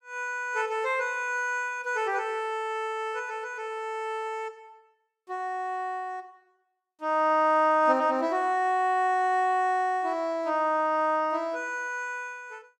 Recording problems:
none

